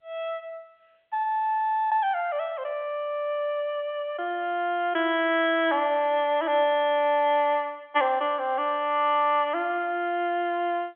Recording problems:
telephone audio; 300 Hz to 3.4 kHz, G.711

